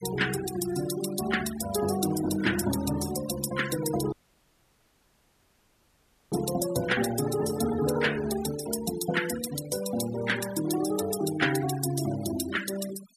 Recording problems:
noise reduction artefacts; signal-to-artefact ratio 11 dB
audio cutting out; at 4 s for 2 s

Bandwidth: 14.5 kHz